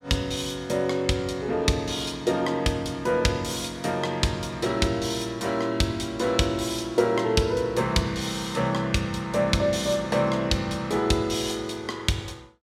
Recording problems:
none

